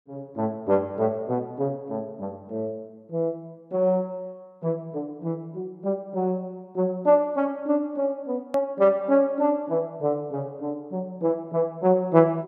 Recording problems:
hard cut with a click; at 8.5 s

